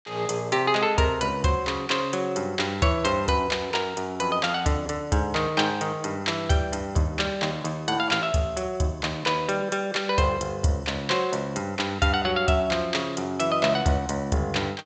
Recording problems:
treble cut off; nothing above 8 kHz

